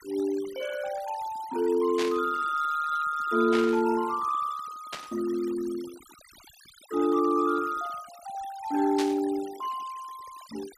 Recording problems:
denoising artefacts; signal-to-artefact ratio 19 dB
burst of static; 4 times, first at 2 s; peak -1 dB vs average level

